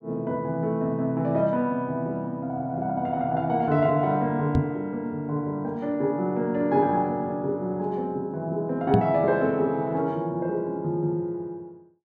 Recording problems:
microphone thump; at 4.5 s and at 9 s; peak +7 dB vs average level

